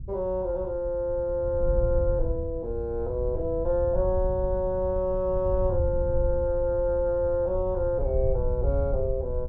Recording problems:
wind noise; below 82 Hz, SNR 6 dB

